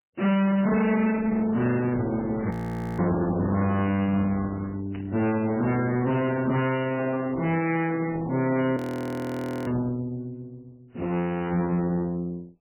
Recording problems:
lossy compression; Opus, then MP3, log-spectral distance 3 dB, nothing above 17.1 kHz
distorted audio; soft clipping, signal-to-distortion ratio 7 dB
burst of static; 5 times, first at 1 s; peak -12 dB vs average level
audio freezing; at 2.5 s and at 9 s for 1 s

